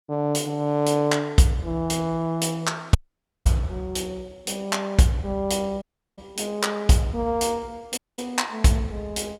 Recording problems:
dropout; at 3 s for 0.5 s, at 6 s and at 8 s

